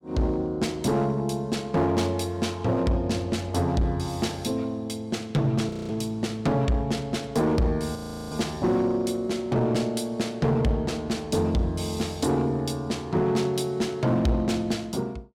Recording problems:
distorted audio; hard clipping, uneven, signal-to-distortion ratio 10 dB
audio freezing; at 5.5 s and at 8 s

